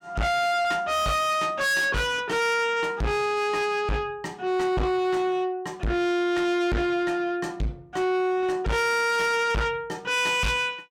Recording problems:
distortion; soft clipping, signal-to-distortion ratio 6 dB

